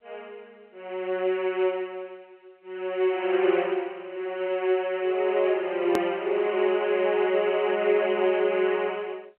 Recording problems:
telephone audio; 260 Hz to 3.1 kHz, G.711
hard cut with a click; at 6 s

